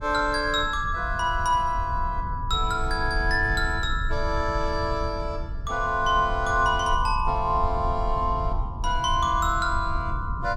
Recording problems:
low-frequency rumble; below 76 Hz, SNR 8 dB

